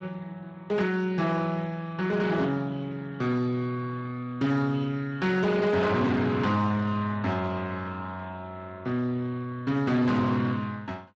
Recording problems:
codec artefacts; Speex, log-spectral distance 3 dB, nothing above 7.3 kHz
distortion; hard clipping, uneven, signal-to-distortion ratio 11 dB

